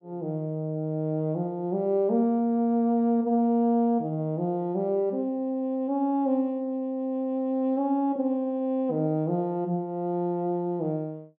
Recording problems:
none

